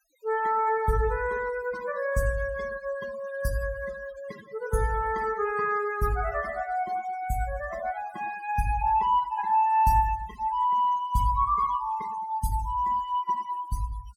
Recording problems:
noise reduction artefacts; signal-to-artefact ratio 18 dB

